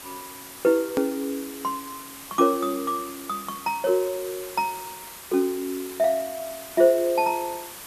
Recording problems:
background hiss; slope -1 dB per octave, SNR 13 dB
click at an edit; at 1 s

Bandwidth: 14 kHz